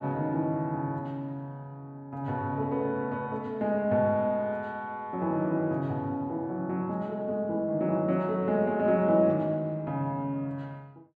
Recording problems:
none

